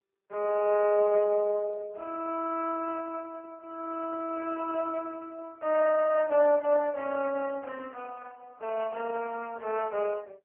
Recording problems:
phone line; 320 Hz to 2.3 kHz, AMR-NB

